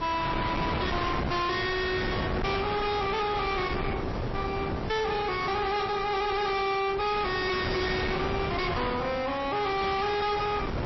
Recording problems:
lossy compression; MP3, log-spectral distance 8 dB, nothing above 5.5 kHz
distortion; hard clipping, signal-to-distortion ratio 6 dB
background hiss; slope -4 dB per octave, SNR 19 dB
wind noise; below 1 kHz, SNR 5 dB

